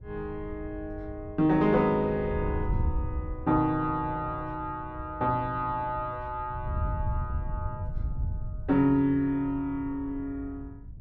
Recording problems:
wind on the microphone; below 100 Hz, SNR 8 dB

